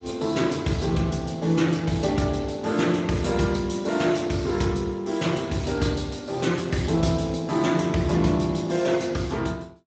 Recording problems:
lossy compression; Speex, log-spectral distance 4 dB, nothing above 7.8 kHz

